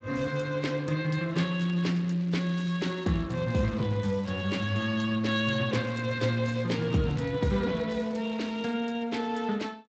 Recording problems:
lossy compression; Speex, log-spectral distance 4 dB, nothing above 7.3 kHz
crackling; from 1.5 to 4.5 s and from 6 to 8.5 s; loose cable, SNR 24 dB

